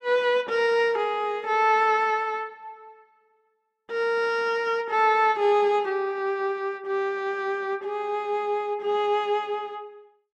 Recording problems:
none

